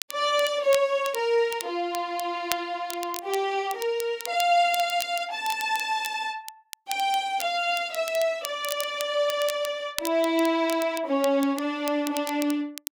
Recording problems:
crackling; vinyl, SNR 12 dB

